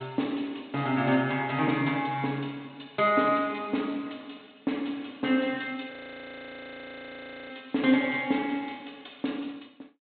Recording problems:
low-pass filter; nothing above 4 kHz
frozen audio; at 6 s for 1.5 s

